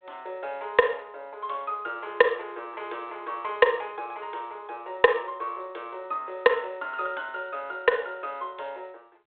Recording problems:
phone line; 370 Hz to 3.6 kHz, G.726

